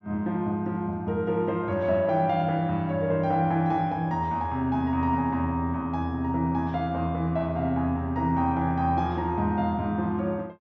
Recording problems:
treble missing; nothing above 7.5 kHz

